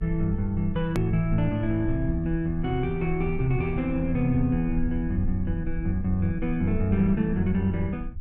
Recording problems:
low-frequency rumble; below 60 Hz, strongest tone 22 Hz, SNR 10 dB
click at an edit; at 1 s

